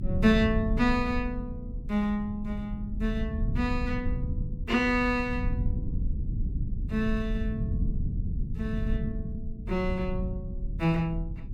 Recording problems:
low-frequency rumble; below 120 Hz, SNR 4 dB

